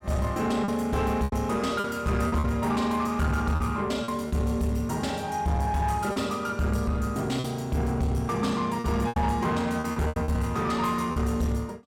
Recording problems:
distortion; soft clipping, signal-to-distortion ratio 12 dB
packet loss; 7% of the sound replaced, filled with repeated pitch periods

